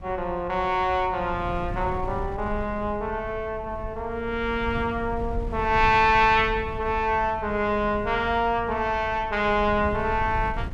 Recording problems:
wind on the microphone; below 110 Hz, SNR 12 dB

